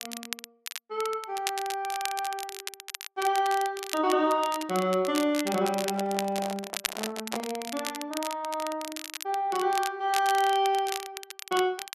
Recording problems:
crackle; vinyl, SNR 9 dB
handling noise; from 6 to 7.5 s; peak -1 dB vs average level

